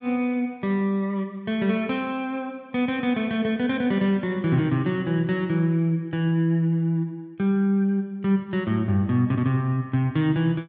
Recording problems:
none

